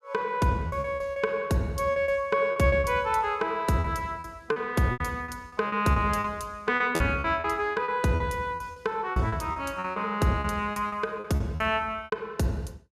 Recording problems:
packet loss; 13% of the sound replaced, filled with repeated pitch periods

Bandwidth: 14.5 kHz